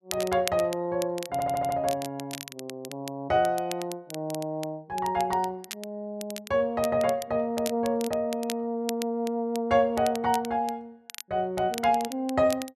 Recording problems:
crackle; vinyl, SNR 14 dB
stutter; at 1.5 s

